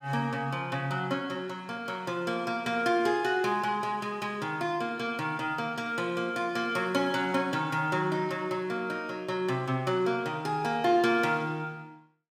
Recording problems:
none

